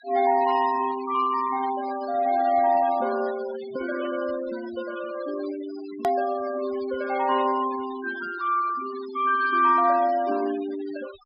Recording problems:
treble cut off; nothing above 5.5 kHz
noise reduction artefacts; signal-to-artefact ratio 17 dB
click at an edit; at 6 s

